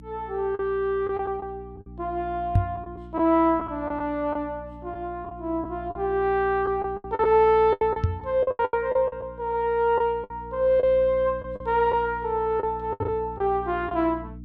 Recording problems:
mains hum; 60 Hz, harmonics up to 300 Hz, SNR 18 dB
lost packets; 9% of the sound replaced, filled with the last packet
microphone thump; at 2.5 s, at 8 s and at 13 s; peak +7 dB vs average level

